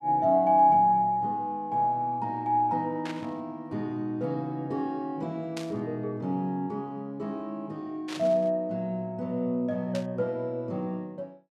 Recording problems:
static burst; 4 times, first at 3 s; peak -7 dB vs average level

